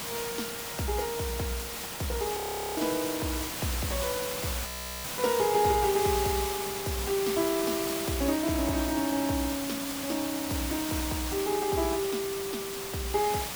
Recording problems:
hiss; slope -1 dB per octave, SNR 3 dB
audio freezing; at 2.5 s and at 4.5 s

